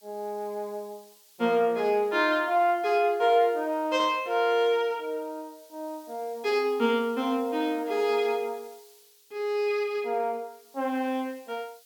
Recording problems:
background hiss; slope +4 dB per octave, SNR 27 dB

